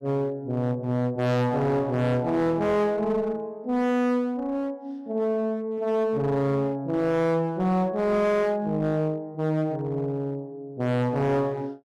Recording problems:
distortion; hard clipping, uneven, signal-to-distortion ratio 7 dB

